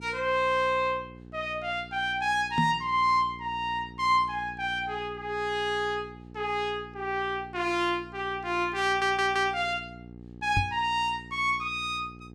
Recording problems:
mains hum; 60 Hz, harmonics up to 840 Hz, SNR 19 dB
microphone bump; at 2.5 s and at 11 s; peak +3 dB vs average level
stutter; at 9 s

